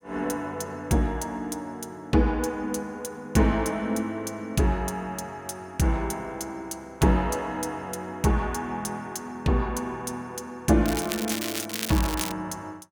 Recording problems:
crackling; from 11 to 12 s; loose cable, SNR 4 dB

